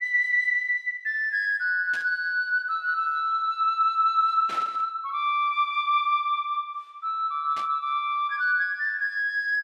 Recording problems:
static burst; at 2 s, at 4.5 s and at 7.5 s; peak -10 dB vs average level

